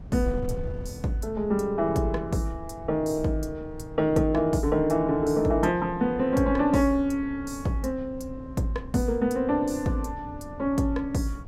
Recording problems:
wind noise; below 140 Hz, SNR 15 dB

